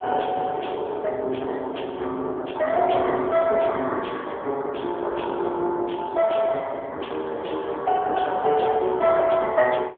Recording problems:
phone line; 300 Hz to 3.1 kHz, AMR-NB

